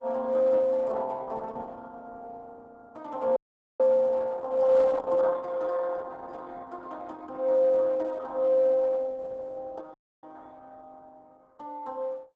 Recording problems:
codec artefacts; Opus, log-spectral distance 3 dB, nothing above 7.3 kHz
audio cutting out; at 3.5 s and at 10 s

